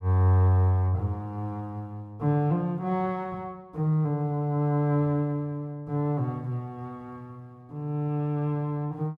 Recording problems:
none

